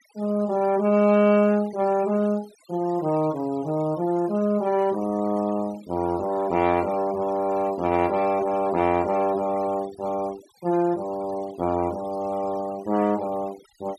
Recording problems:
noise reduction artefacts; signal-to-artefact ratio 21 dB

